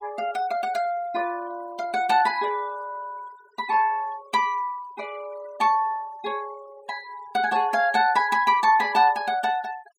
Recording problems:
denoising artefacts; signal-to-artefact ratio 22 dB

